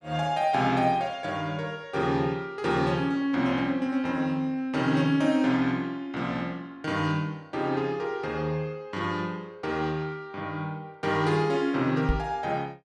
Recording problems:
microphone bump; at 12 s; peak +3 dB vs average level

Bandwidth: 12.5 kHz